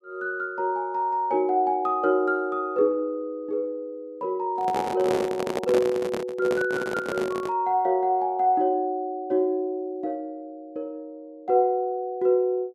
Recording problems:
microphone handling noise; from 4.5 to 7.5 s; peak +2 dB vs average level

